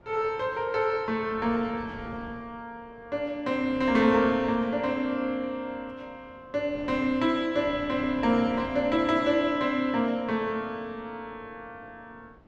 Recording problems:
wind on the microphone; below 560 Hz, SNR 21 dB

